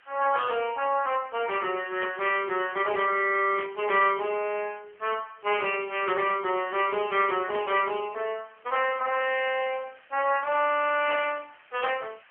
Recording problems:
phone line; 300 Hz to 3.1 kHz, AMR-NB
hiss; SNR 30 dB
burst of static; 4 times, first at 2 s; peak -5 dB vs average level

